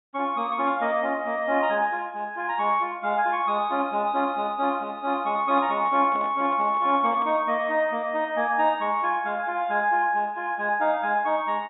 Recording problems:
treble missing; nothing above 4 kHz
handling noise; from 5.5 to 7.5 s; peak -12 dB vs average level

